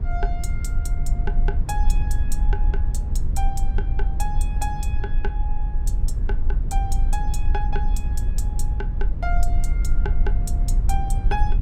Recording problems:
low-frequency rumble; below 52 Hz, strongest tone 22 Hz, SNR -10 dB

